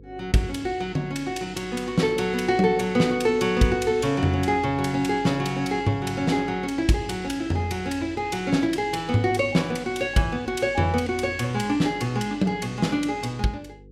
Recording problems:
electrical hum; 50 Hz, harmonics up to 500 Hz, SNR 23 dB

